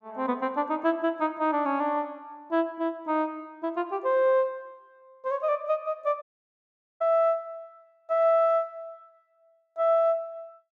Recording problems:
dropout; at 6 s for 1 s

